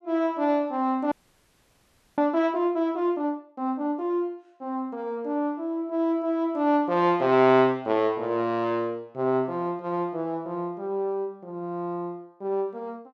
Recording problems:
audio freezing; at 1 s for 1 s

